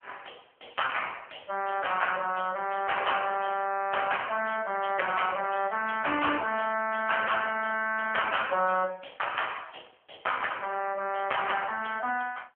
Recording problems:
phone line; 260 Hz to 3.1 kHz, AMR-NB

